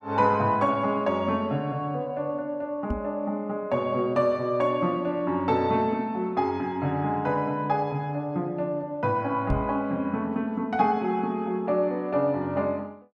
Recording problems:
knock on the microphone; at 3 s and at 9.5 s; peak +2 dB vs average level

